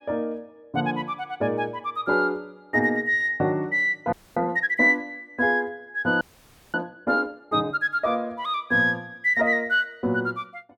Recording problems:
frozen audio; at 4 s and at 6 s for 0.5 s

